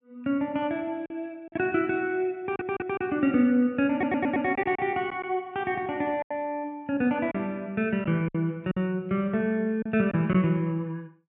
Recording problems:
lost packets; 5% of the sound replaced, filled with silence
audio stuttering; at 2.5 s and at 4 s

